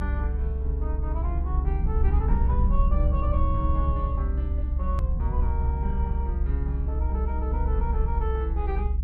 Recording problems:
low-frequency rumble; below 66 Hz, SNR -8 dB
hard cut with a click; at 5 s

